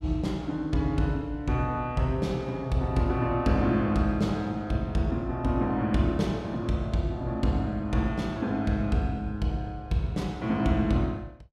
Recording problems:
none

